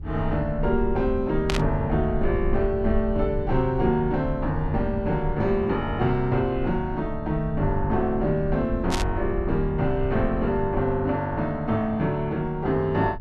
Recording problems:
rumble; below 68 Hz, SNR 9 dB
burst of static; at 1.5 s and at 9 s; peak +1 dB vs average level

